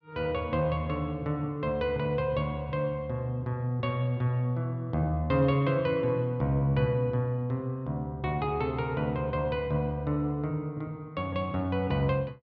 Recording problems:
none

